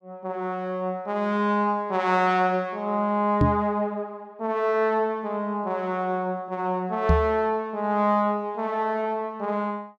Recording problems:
knock on the microphone; at 3.5 s and at 7 s; peak +7 dB vs average level

